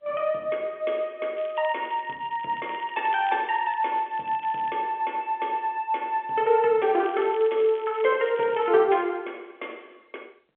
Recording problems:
phone line; 280 Hz to 3.4 kHz, G.711
crackle; from 1.5 to 5 s and from 7 to 9 s; loose cable, SNR 23 dB

